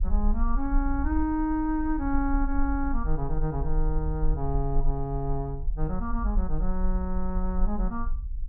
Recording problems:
rumble; below 44 Hz, strongest tone 22 Hz, SNR 2 dB

